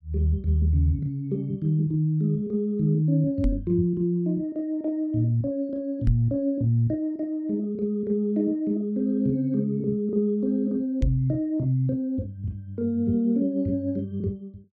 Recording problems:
microphone bump; at 3.5 s, at 6 s and at 11 s; peak +4 dB vs average level

